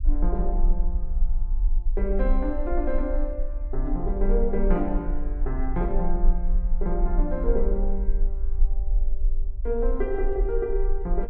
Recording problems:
low-frequency rumble; below 38 Hz, strongest tone 22 Hz, SNR -2 dB

